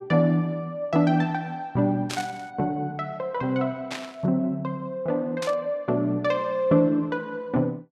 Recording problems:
static burst; at 2 s, at 4 s and at 5.5 s; peak -3 dB vs average level

